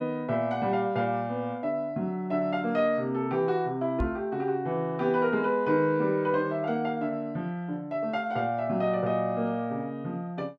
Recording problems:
microphone bump; at 4 s; peak +1 dB vs average level

